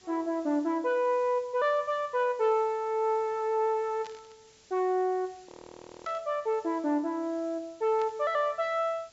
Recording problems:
treble missing; nothing above 8 kHz
background hiss; SNR 28 dB
burst of static; at 4 s, at 6 s and at 8 s; peak -15 dB vs average level
frozen audio; at 5.5 s for 0.5 s

